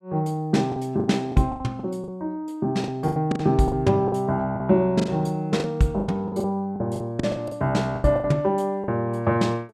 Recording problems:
lost packets; 14% of the sound replaced, filled with the last packet

